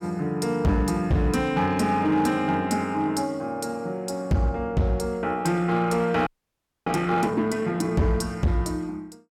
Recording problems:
distortion; hard clipping, signal-to-distortion ratio 11 dB
audio freezing; at 6.5 s for 0.5 s

